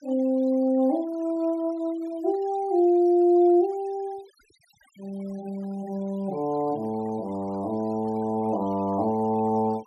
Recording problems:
denoising artefacts; signal-to-artefact ratio 28 dB

